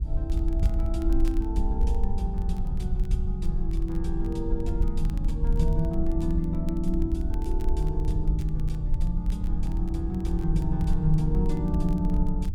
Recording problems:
rumble; below 56 Hz, SNR -1 dB
crackling; vinyl, SNR 27 dB

